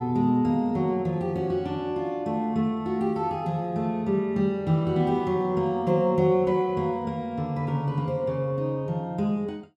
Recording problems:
none

